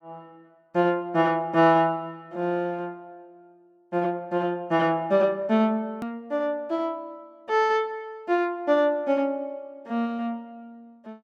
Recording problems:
click at an edit; at 6 s

